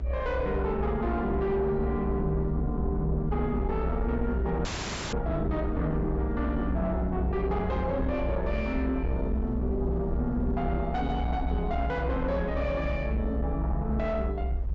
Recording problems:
low-pass filter; nothing above 8 kHz
distorted audio; soft clipping, signal-to-distortion ratio 10 dB
low-frequency rumble; below 64 Hz, strongest tone 60 Hz, SNR 2 dB
wind noise; below 400 Hz, SNR 16 dB
audio freezing; at 4.5 s

